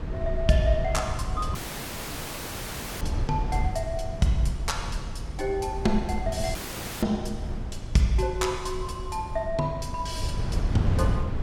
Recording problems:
low-frequency rumble; below 110 Hz, SNR 4 dB
audio cutting out; at 1.5 s for 1.5 s and at 6.5 s

